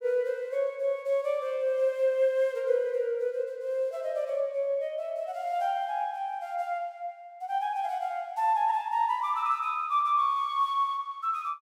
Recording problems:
none

